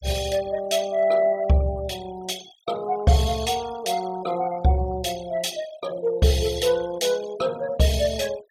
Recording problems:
denoising artefacts; signal-to-artefact ratio 18 dB

